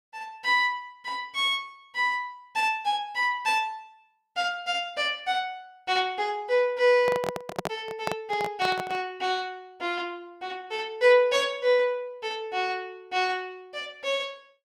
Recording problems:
handling noise; from 7 to 9 s; peak +1 dB vs average level

